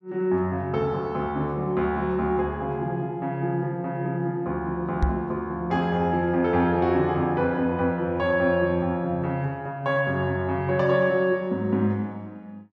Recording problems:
microphone bump; at 5 s; peak +5 dB vs average level

